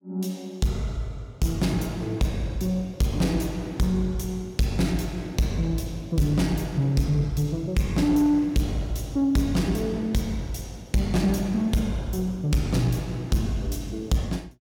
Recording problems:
distorted audio; soft clipping, signal-to-distortion ratio 12 dB

